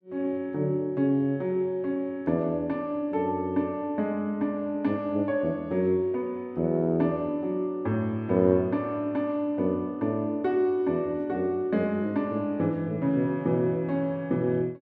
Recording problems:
none

